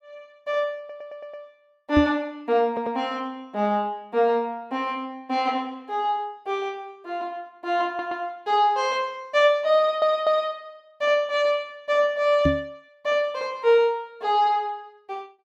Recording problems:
stutter; 4 times, first at 1 s
microphone bump; at 2 s and at 12 s; peak +5 dB vs average level

